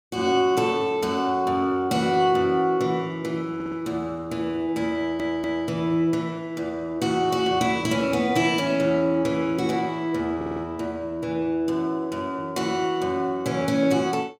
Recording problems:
stutter; at 3.5 s, at 5 s and at 10 s

